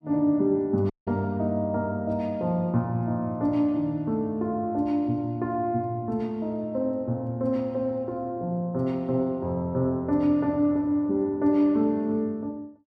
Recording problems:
dropout; at 1 s

